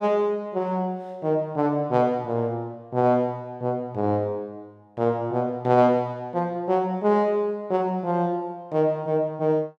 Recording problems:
none

